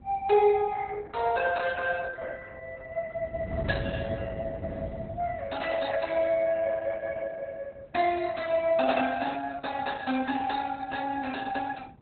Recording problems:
lossy codec; Opus, log-spectral distance 4 dB, nothing above 4 kHz
wind on the microphone; below 220 Hz, SNR 10 dB

